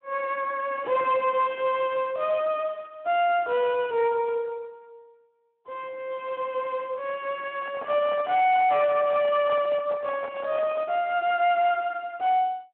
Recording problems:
telephone audio; 320 Hz to 3 kHz, Speex
distortion; hard clipping, signal-to-distortion ratio 11 dB
handling noise; from 7.5 to 11 s; peak -6 dB vs average level

